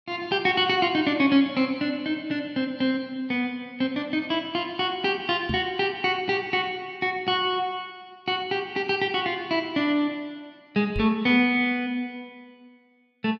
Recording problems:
microphone bump; at 5.5 s and at 11 s; peak -1 dB vs average level

